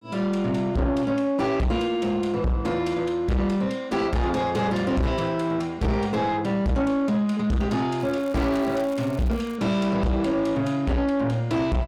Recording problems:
distorted audio; soft clipping, signal-to-distortion ratio 7 dB
crackle; from 8 to 9.5 s; loose cable, SNR 24 dB

